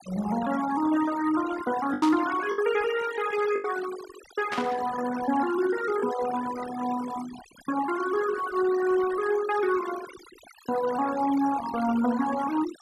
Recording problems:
denoising artefacts; signal-to-artefact ratio 12 dB
packet loss; 2% of the sound replaced, filled with the last packet
burst of static; at 2 s and at 4.5 s; peak -2 dB vs average level

